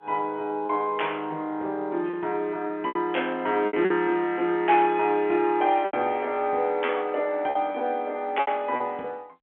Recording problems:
telephone audio; 260 Hz to 3.3 kHz, G.711
lost packets; 6% of the sound replaced, filled with repeated pitch periods

